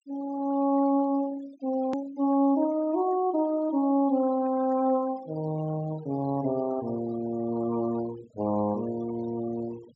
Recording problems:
low-pass filter; nothing above 8 kHz
noise reduction artefacts; signal-to-artefact ratio 20 dB
hard cut with a click; at 2 s

